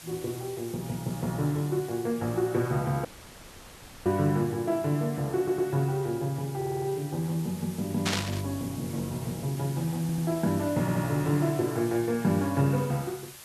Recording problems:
background hiss; slope 0 dB per octave, SNR 16 dB
dropout; at 3 s for 1 s
audio stuttering; 4 times, first at 5.5 s
burst of static; at 8 s; peak +4 dB vs average level

